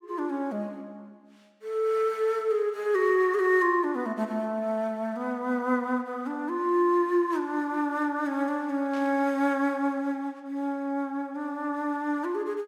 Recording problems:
static burst; at 9 s; peak -15 dB vs average level

